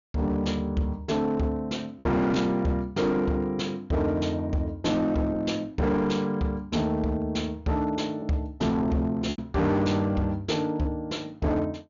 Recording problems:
treble missing; nothing above 7 kHz
distortion; hard clipping, uneven, signal-to-distortion ratio 10 dB
packet loss; 1.6% of the sound replaced, filled with repeated pitch periods

